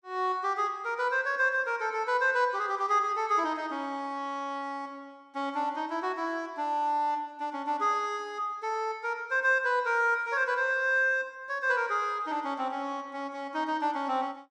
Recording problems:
none

